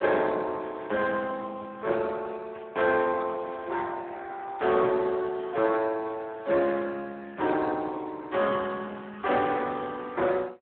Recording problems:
phone line; 280 Hz to 2.9 kHz, Speex
static burst; at 2.5 s and at 9.5 s; peak -15 dB vs average level

